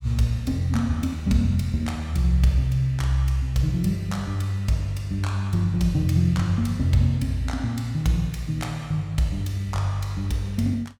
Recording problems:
none

